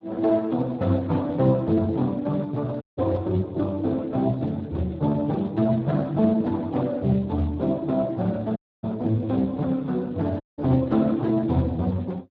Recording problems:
lossy compression; Speex, log-spectral distance 2 dB
dropout; at 3 s, at 8.5 s and at 10 s

